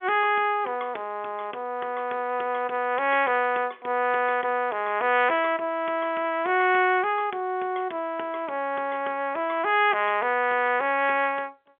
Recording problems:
phone line; 280 Hz to 3.5 kHz, G.711

